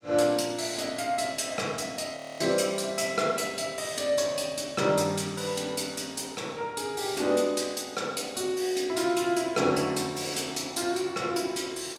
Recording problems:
audio freezing; at 2 s

